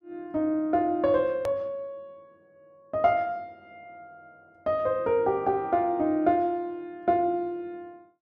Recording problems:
hard cut with a click; at 1.5 s

